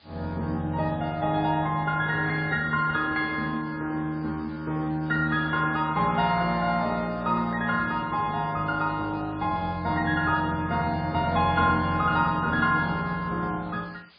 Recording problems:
lossy compression; MP3, log-spectral distance 5 dB, nothing above 4.4 kHz
hiss; SNR 28 dB

